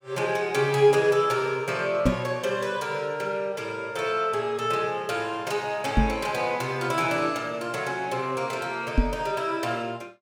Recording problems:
microphone bump; at 2 s, at 6 s and at 9 s; peak +8 dB vs average level

